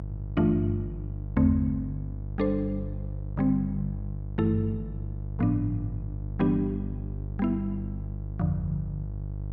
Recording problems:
electrical hum; 50 Hz, harmonics up to 500 Hz, SNR 7 dB

